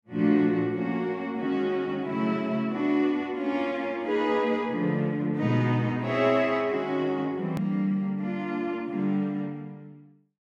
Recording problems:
hard cut with a click; at 7.5 s

